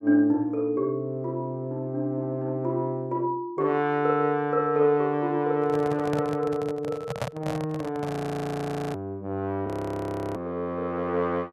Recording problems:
microphone handling noise; from 5.5 to 8 s; peak +1 dB vs average level
frozen audio; at 8 s for 1 s and at 9.5 s for 0.5 s

